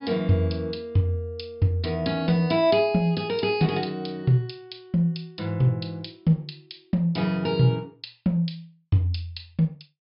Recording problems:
low-pass filter; nothing above 5.5 kHz

